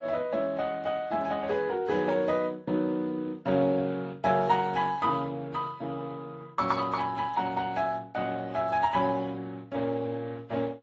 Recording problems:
codec artefacts; Speex, then AAC, log-spectral distance 3 dB, nothing above 7.3 kHz

